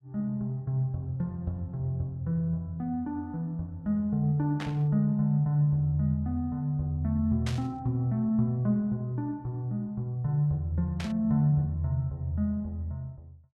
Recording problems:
static burst; at 4.5 s, at 7.5 s and at 11 s; peak -5 dB vs average level

